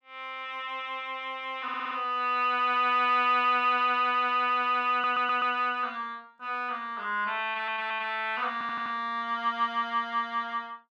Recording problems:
audio stuttering; 4 times, first at 1.5 s

